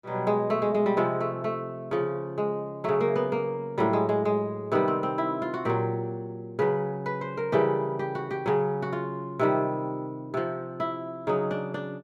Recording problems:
none

